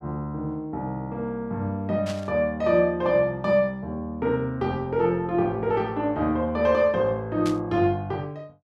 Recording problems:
static burst; at 2 s and at 7.5 s; peak -7 dB vs average level

